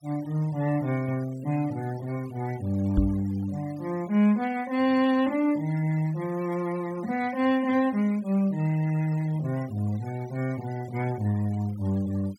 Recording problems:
denoising artefacts; signal-to-artefact ratio 22 dB
microphone bump; at 3 s; peak +7 dB vs average level

